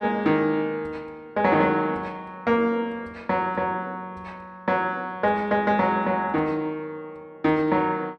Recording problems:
none

